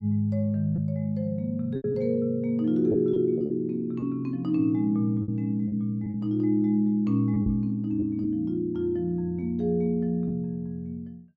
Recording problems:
packet loss; 5% of the sound replaced, filled with repeated pitch periods
knock on the microphone; at 7.5 s; peak -5 dB vs average level

